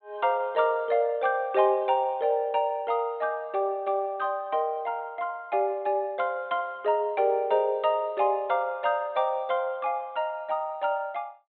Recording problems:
treble cut off; nothing above 4 kHz

